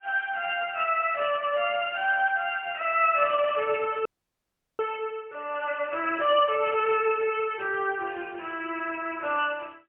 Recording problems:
telephone audio; 340 Hz to 3.2 kHz, AMR-NB, then MP3
audio freezing; at 4 s for 0.5 s

